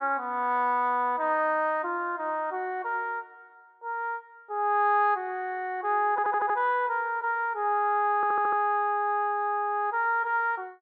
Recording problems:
audio stuttering; at 6 s and at 8 s

